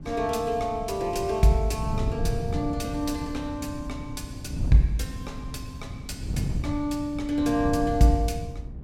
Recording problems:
wind on the microphone; below 160 Hz, SNR 7 dB

